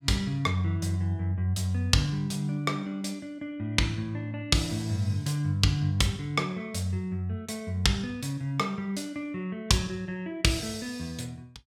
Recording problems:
none

